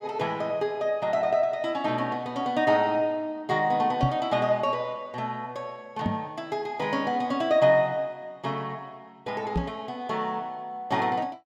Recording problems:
microphone thump; at 4 s, at 6 s and at 9.5 s; peak +5 dB vs average level

